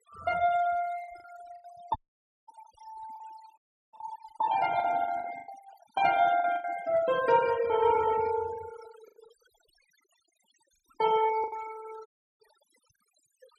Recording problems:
denoising artefacts; signal-to-artefact ratio 17 dB
lost packets; 9% of the sound replaced, filled with the last packet
knock on the microphone; at 2 s; peak -14 dB vs average level
audio cutting out; at 2 s for 0.5 s, at 3.5 s and at 12 s

